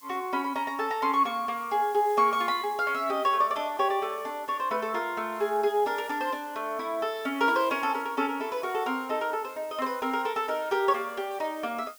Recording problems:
background hiss; slope +2 dB per octave, SNR 22 dB

